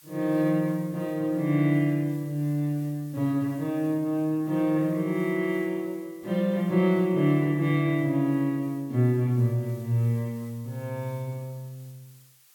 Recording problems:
background hiss; slope +3 dB per octave, SNR 27 dB

